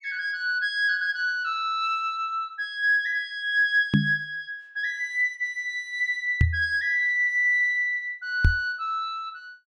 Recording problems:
microphone thump; at 4 s, at 6.5 s and at 8.5 s; peak +7 dB vs average level

